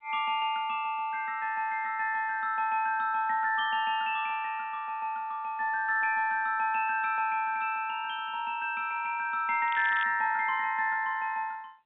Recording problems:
phone line; 190 Hz to 3.7 kHz, G.711
crackling; at 9.5 s; loose cable, SNR 16 dB

